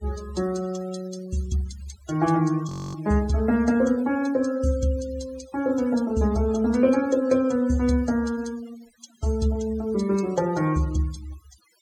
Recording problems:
denoising artefacts; signal-to-artefact ratio 19 dB
frozen audio; at 2.5 s

